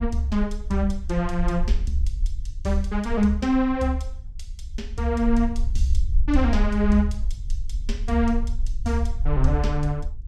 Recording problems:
low-frequency rumble; below 50 Hz, SNR 5 dB

